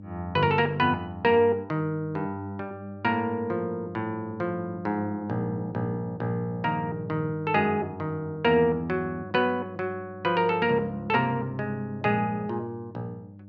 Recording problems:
mains hum; 50 Hz, harmonics up to 600 Hz, SNR 16 dB

